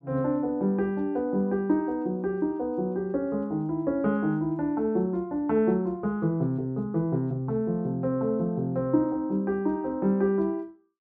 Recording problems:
none

